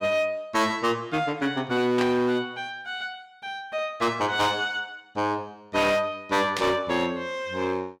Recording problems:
distorted audio; hard clipping, signal-to-distortion ratio 10 dB
static burst; at 2 s and at 6.5 s; peak 0 dB vs average level

